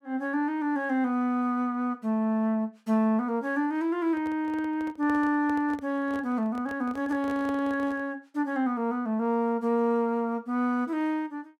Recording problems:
microphone handling noise; from 4 to 8 s; peak -9 dB vs average level

